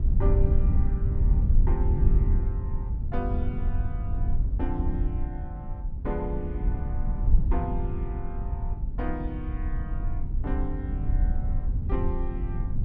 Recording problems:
wind on the microphone; below 78 Hz, SNR -8 dB

